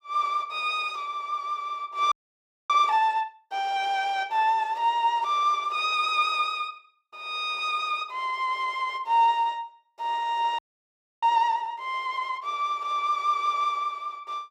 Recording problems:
audio freezing; at 2 s for 0.5 s and at 11 s for 0.5 s

